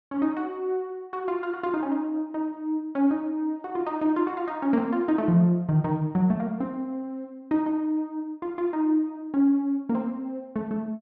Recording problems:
none

